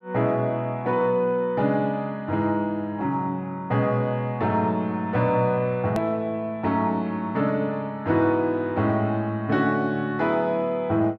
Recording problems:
edit click; at 6 s

